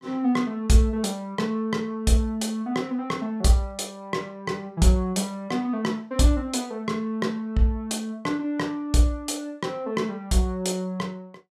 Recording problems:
none

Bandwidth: 13.5 kHz